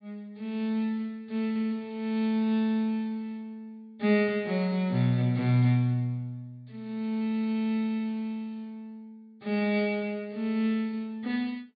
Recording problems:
treble missing; nothing above 4.7 kHz

